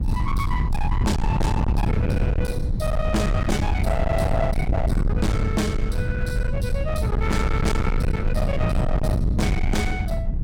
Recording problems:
distortion; hard clipping, signal-to-distortion ratio 6 dB
low-frequency rumble; below 140 Hz, SNR -3 dB
wind noise; below 230 Hz, SNR 9 dB

